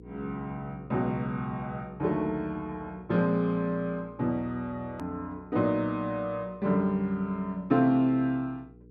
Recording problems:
electrical hum; 60 Hz, harmonics up to 480 Hz, SNR 22 dB
edit click; at 5 s

